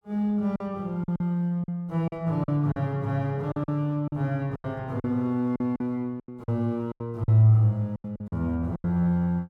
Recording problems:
packet loss; 11% of the sound replaced, filled with silence

